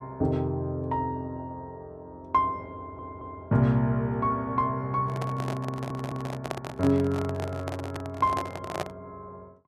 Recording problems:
stutter; at 3 s and at 5.5 s
microphone handling noise; from 5 to 9 s; peak +2 dB vs average level

